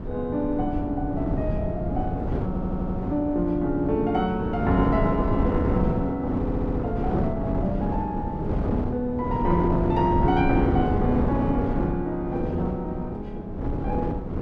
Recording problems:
rumble; below 120 Hz, SNR 10 dB
wind on the microphone; below 350 Hz, SNR 2 dB
stutter; at 2.5 s and at 6.5 s

